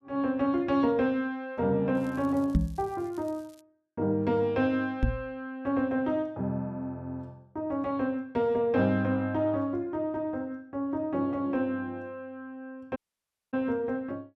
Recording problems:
crackling; from 2 to 3.5 s; loose cable, SNR 28 dB
microphone bump; at 2.5 s and at 5 s; peak +8 dB vs average level
dropout; at 13 s for 0.5 s

